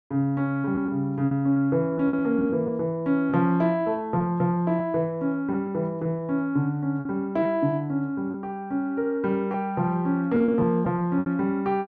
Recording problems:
packet loss; 6% of the sound replaced, filled with repeated pitch periods

